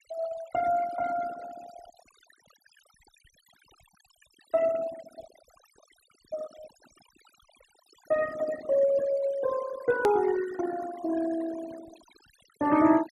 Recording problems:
denoising artefacts; signal-to-artefact ratio 15 dB
edit click; at 10 s

